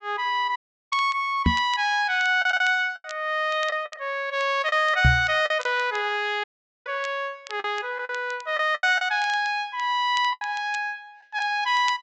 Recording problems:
treble missing; nothing above 8 kHz
crackle; vinyl, SNR 22 dB
packet loss; 6% of the sound replaced, filled with the last packet
dropout; at 0.5 s and at 6.5 s
microphone bump; at 1.5 s and at 5 s; peak +7 dB vs average level

